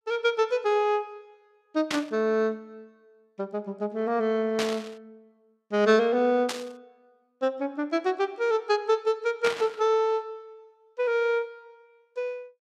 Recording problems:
burst of static; 4 times, first at 2 s; peak 0 dB vs average level

